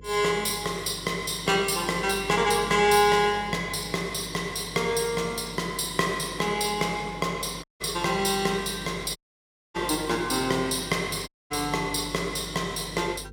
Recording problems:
electrical hum; 50 Hz, harmonics up to 500 Hz, SNR 20 dB
audio cutting out; at 7.5 s, at 9 s for 0.5 s and at 11 s

